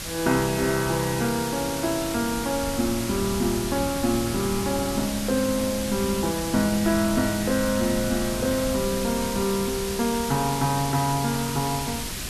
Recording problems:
background hiss; SNR 6 dB
wind noise; below 210 Hz, SNR 13 dB

